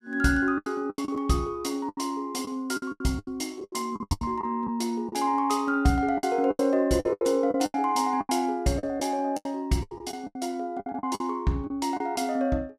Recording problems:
packet loss; 15% of the sound replaced, filled with the last packet

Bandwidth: 14.5 kHz